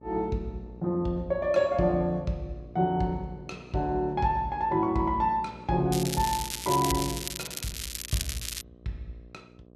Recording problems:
hum; 60 Hz, harmonics up to 1.1 kHz, SNR 22 dB
crackling; from 6 to 8.5 s; loose cable, SNR 6 dB

